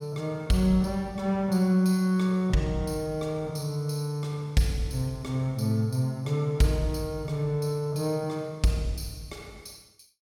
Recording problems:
none

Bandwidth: 16.5 kHz